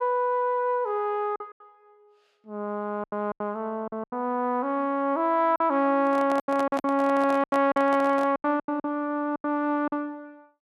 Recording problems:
lost packets; 10% of the sound replaced, filled with silence
microphone handling noise; from 6 to 8.5 s; peak -4 dB vs average level

